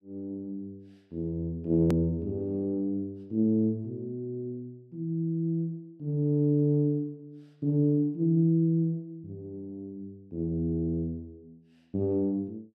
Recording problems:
click at an edit; at 2 s

